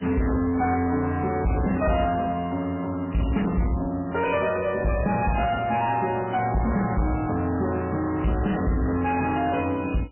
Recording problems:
lossy codec; MP3, log-spectral distance 4 dB, nothing above 2.5 kHz
distortion; soft clipping, signal-to-distortion ratio 6 dB

